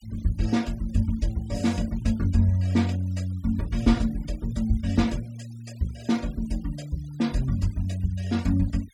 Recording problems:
denoising artefacts; signal-to-artefact ratio 23 dB

